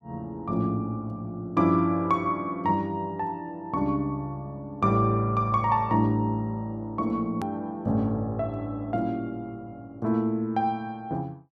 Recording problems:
hard cut with a click; at 7.5 s

